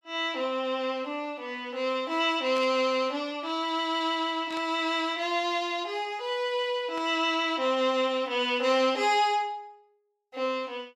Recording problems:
burst of static; at 2.5 s, at 4.5 s and at 7 s; peak -10 dB vs average level

